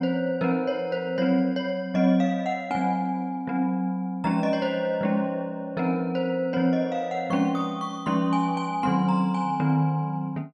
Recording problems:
none

